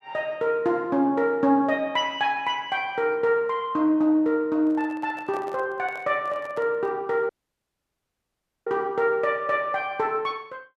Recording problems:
handling noise; from 4.5 to 7 s; peak -12 dB vs average level
dropout; at 7.5 s for 1.5 s

